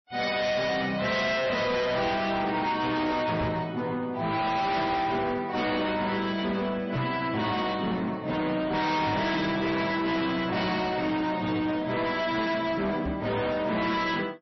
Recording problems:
lossy codec; MP3, log-spectral distance 3 dB, nothing above 5.8 kHz
distorted audio; hard clipping, signal-to-distortion ratio 7 dB
microphone bump; 4 times, first at 3.5 s; peak +1 dB vs average level

